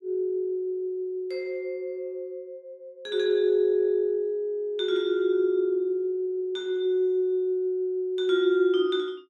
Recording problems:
none

